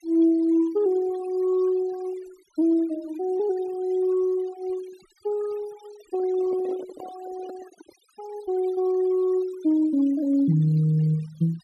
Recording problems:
noise reduction artefacts; signal-to-artefact ratio 24 dB
handling noise; from 6 to 8 s; peak -10 dB vs average level

